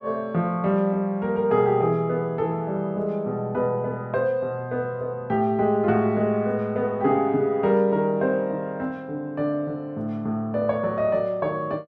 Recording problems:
none

